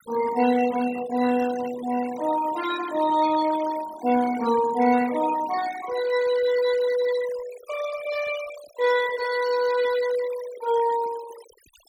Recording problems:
noise reduction artefacts; signal-to-artefact ratio 14 dB

